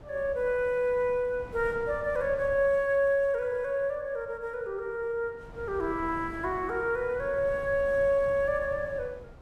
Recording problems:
wind on the microphone; below 410 Hz, SNR 18 dB

